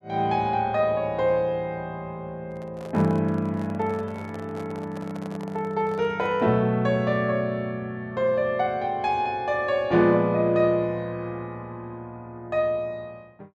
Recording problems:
microphone handling noise; from 2.5 to 6.5 s; peak -11 dB vs average level

